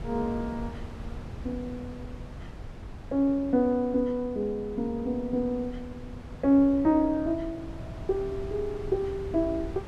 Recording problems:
wind noise; below 200 Hz, SNR 14 dB

